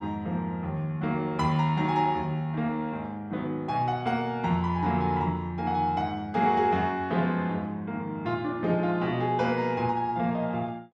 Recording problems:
none

